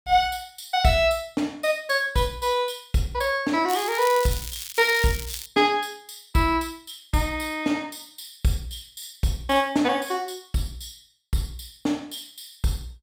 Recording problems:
crackle; from 3.5 to 5.5 s; loose cable, SNR 9 dB

